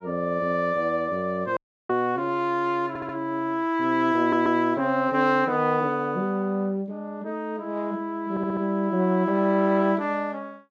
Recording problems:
dropout; at 1.5 s
audio stuttering; at 3 s, at 4 s and at 8.5 s

